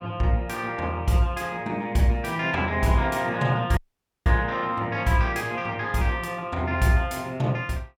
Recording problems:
dropout; at 4 s

